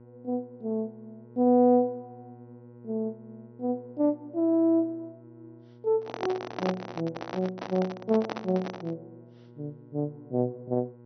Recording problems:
treble cut off; nothing above 6 kHz
hum; 60 Hz, harmonics up to 1.1 kHz, SNR 22 dB
handling noise; from 6 to 9 s; peak +1 dB vs average level

